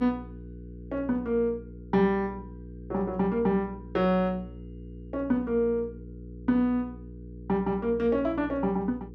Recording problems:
hum; 60 Hz, harmonics up to 480 Hz, SNR 15 dB

